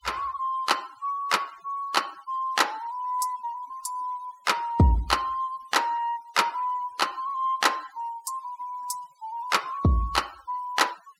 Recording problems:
denoising artefacts; signal-to-artefact ratio 22 dB

